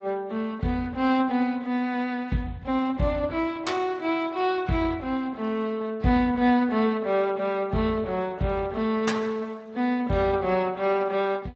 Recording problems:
lossy codec; AAC, then Speex, log-spectral distance 2 dB, nothing above 7.3 kHz

